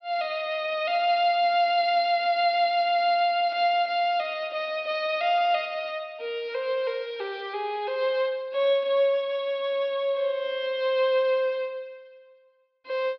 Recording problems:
treble missing; nothing above 5.5 kHz

